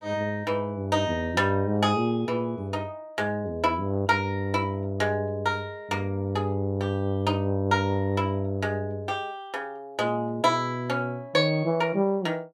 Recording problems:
none

